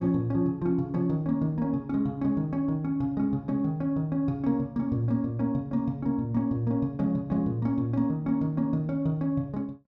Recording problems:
none

